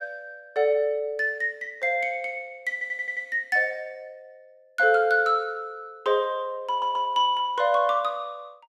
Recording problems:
stutter; at 2.5 s and at 6.5 s

